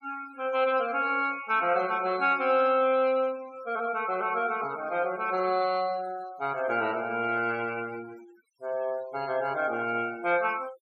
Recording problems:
denoising artefacts; signal-to-artefact ratio 20 dB

